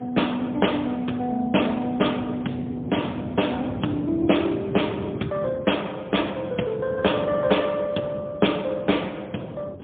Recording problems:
phone line; 150 Hz to 3.5 kHz, AMR-NB, then MP3
wind on the microphone; below 350 Hz, SNR 11 dB

